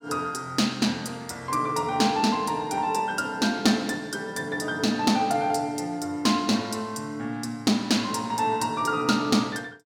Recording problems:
none

